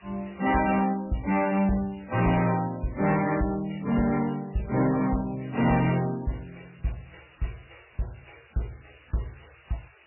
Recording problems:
codec artefacts; MP3, log-spectral distance 16 dB, nothing above 2.4 kHz
distortion; soft clipping, signal-to-distortion ratio 10 dB
hiss; SNR 27 dB

